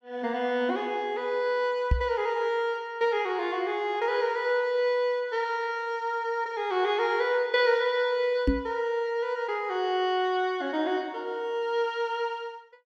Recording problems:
microphone bump; at 2 s and at 8.5 s; peak +6 dB vs average level

